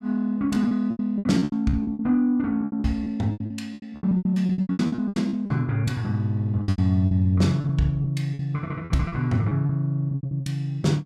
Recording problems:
lost packets; 20% of the sound replaced, filled with repeated pitch periods

